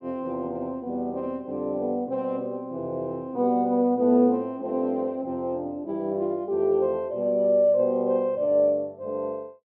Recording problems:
none

